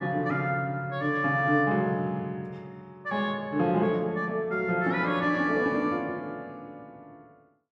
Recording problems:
none

